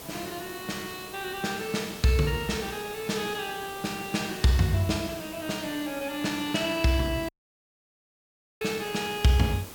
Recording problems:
background hiss; SNR 13 dB
audio cutting out; at 7.5 s for 1.5 s

